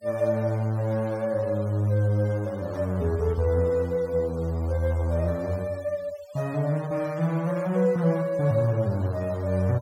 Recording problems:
denoising artefacts; signal-to-artefact ratio 23 dB

